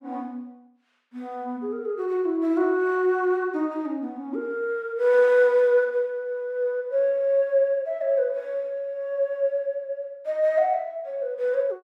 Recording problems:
none

